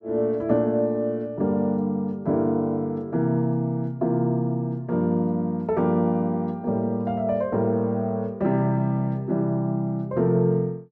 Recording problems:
none

